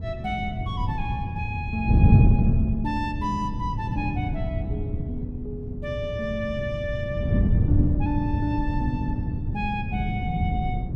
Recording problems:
wind on the microphone; below 150 Hz, SNR -4 dB

